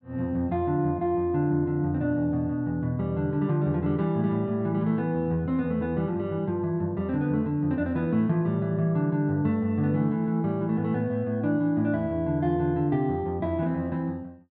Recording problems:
none

